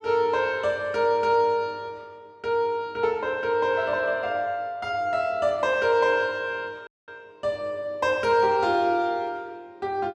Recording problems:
dropout; at 7 s

